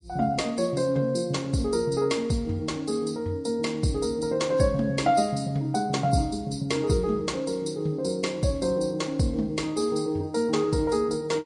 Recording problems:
lossy codec; MP3, log-spectral distance 3 dB, nothing above 10.1 kHz

